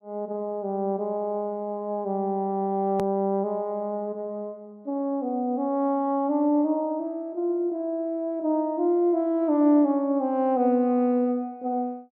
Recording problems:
click at an edit; at 3 s

